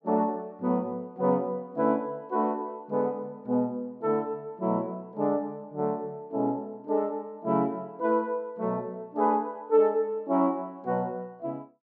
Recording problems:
treble missing; nothing above 8 kHz

